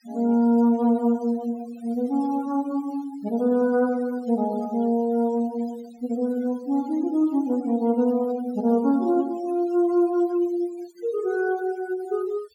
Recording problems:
denoising artefacts; signal-to-artefact ratio 23 dB

